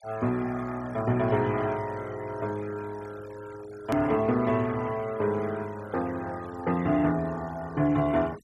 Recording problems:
noise reduction artefacts; signal-to-artefact ratio 20 dB
click at an edit; at 4 s

